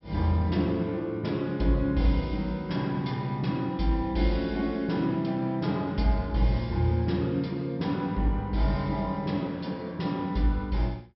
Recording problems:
low-pass filter; nothing above 5.6 kHz

